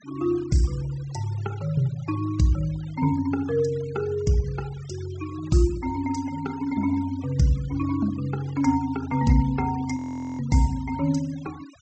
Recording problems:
low-pass filter; nothing above 8 kHz
denoising artefacts; signal-to-artefact ratio 22 dB
audio freezing; at 10 s

